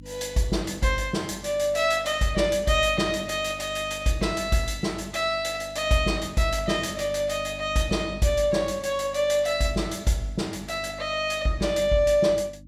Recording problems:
hum; 50 Hz, harmonics up to 300 Hz, SNR 19 dB

